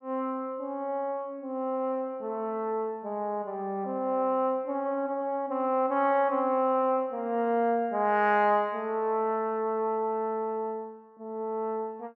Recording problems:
none

